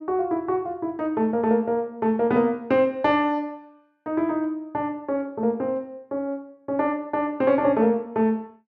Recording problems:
none

